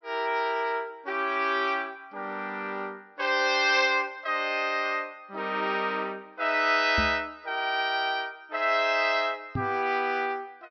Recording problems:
treble cut off; nothing above 6 kHz
microphone thump; at 7 s and at 9.5 s; peak -1 dB vs average level

